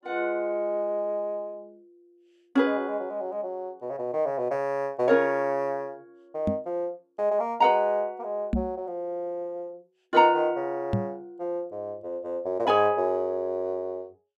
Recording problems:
microphone bump; at 6.5 s, at 8.5 s and at 11 s; peak +4 dB vs average level

